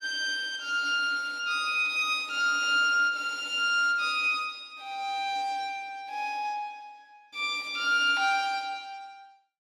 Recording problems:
none

